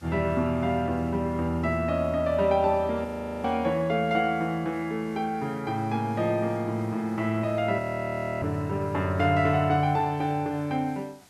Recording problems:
background hiss; slope -1 dB per octave, SNR 29 dB
audio freezing; at 3 s and at 8 s for 0.5 s

